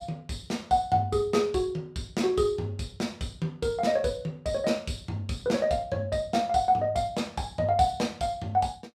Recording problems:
none

